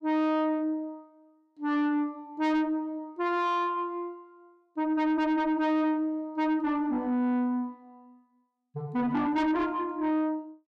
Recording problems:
distorted audio; soft clipping, signal-to-distortion ratio 7 dB

